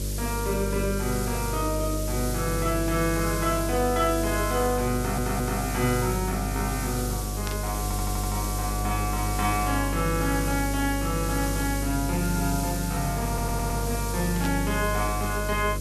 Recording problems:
hum; 50 Hz, harmonics up to 600 Hz, SNR 3 dB
hiss; SNR 7 dB
audio stuttering; at 5 s, at 8 s and at 13 s
burst of static; at 7.5 s and at 14 s; peak -4 dB vs average level

